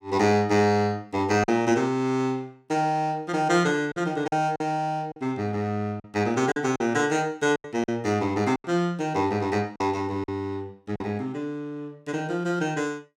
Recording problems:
lost packets; 5% of the sound replaced, filled with silence

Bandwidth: 17 kHz